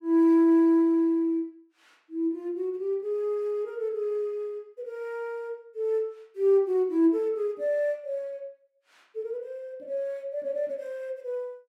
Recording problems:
none

